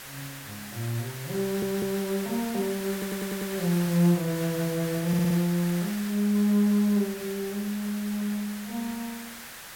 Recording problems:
background hiss; SNR 11 dB
stutter; at 1.5 s, at 3 s and at 5 s

